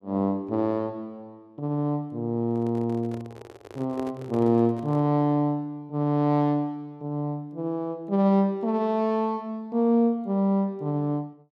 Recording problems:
microphone handling noise; from 2.5 to 5 s; peak -9 dB vs average level

